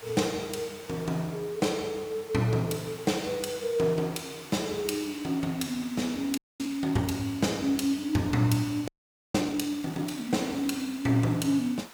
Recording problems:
hiss; SNR 18 dB
audio freezing; at 6.5 s and at 9 s

